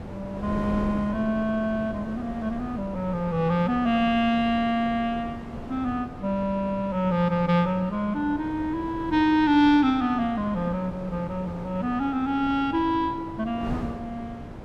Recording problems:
wind noise; below 500 Hz, SNR 13 dB

